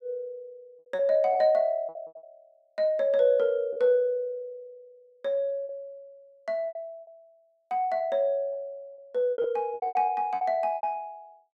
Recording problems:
packet loss; 12% of the sound replaced, filled with repeated pitch periods

